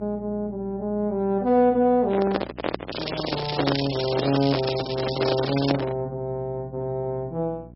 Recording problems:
codec artefacts; MP3, log-spectral distance 7 dB, nothing above 4.5 kHz
mains hum; 60 Hz, harmonics up to 720 Hz, SNR 20 dB
microphone handling noise; from 2 to 6 s; peak +4 dB vs average level
crackling; from 3 to 5.5 s; loose cable, SNR 7 dB

